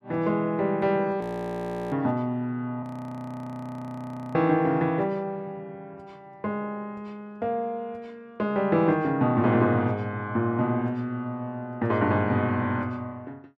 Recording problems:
audio freezing; at 1 s for 0.5 s and at 3 s for 1.5 s

